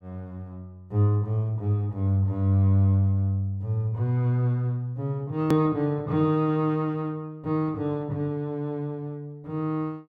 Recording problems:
click at an edit; at 5.5 s

